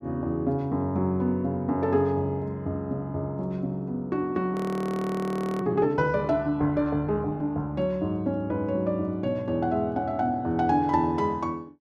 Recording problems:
audio freezing; at 4.5 s for 1 s

